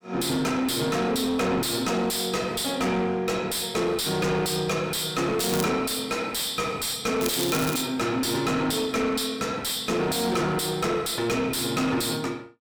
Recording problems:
distortion; soft clipping, signal-to-distortion ratio 5 dB
crackling; at 5.5 s and at 7 s; loose cable, SNR 7 dB

